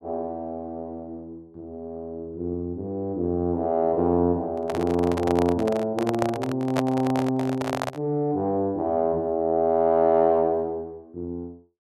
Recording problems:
handling noise; from 4.5 to 8 s; peak +2 dB vs average level

